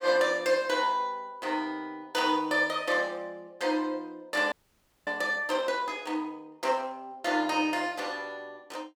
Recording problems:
frozen audio; at 4.5 s for 0.5 s

